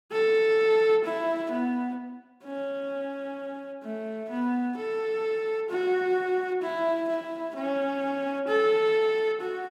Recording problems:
none

